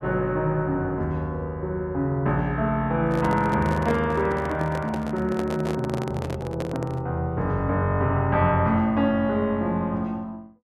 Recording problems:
handling noise; from 3 to 7 s; peak -3 dB vs average level

